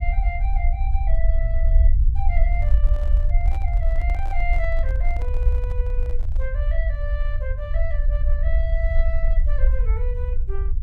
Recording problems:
rumble; below 56 Hz, SNR -11 dB
microphone handling noise; from 2.5 to 6.5 s; peak -4 dB vs average level

